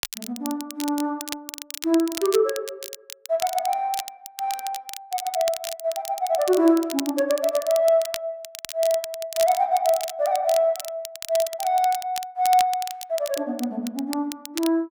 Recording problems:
crackling; vinyl, SNR 11 dB

